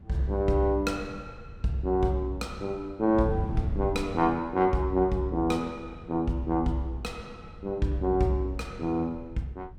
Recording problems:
wind on the microphone; below 160 Hz, SNR 14 dB

